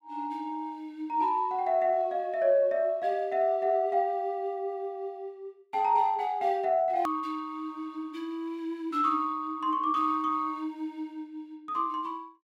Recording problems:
edit click; at 7 s

